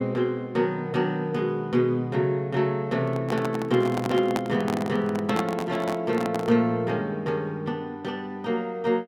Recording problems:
handling noise; from 3 to 6.5 s; peak +2 dB vs average level

